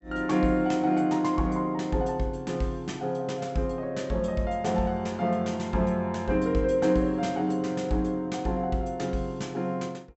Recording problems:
low-pass filter; nothing above 7.8 kHz

